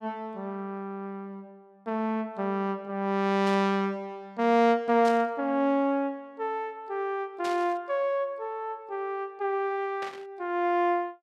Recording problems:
burst of static; 4 times, first at 3.5 s; peak -7 dB vs average level

